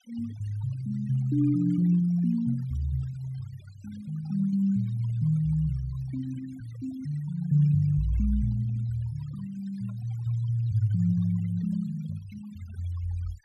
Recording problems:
noise reduction artefacts; signal-to-artefact ratio 22 dB

